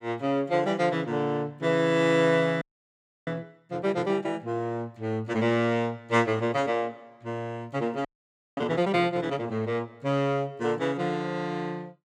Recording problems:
frozen audio; at 2.5 s for 0.5 s and at 8 s for 0.5 s

